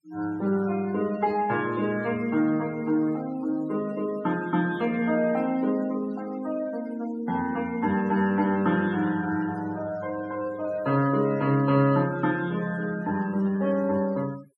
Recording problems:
denoising artefacts; signal-to-artefact ratio 20 dB

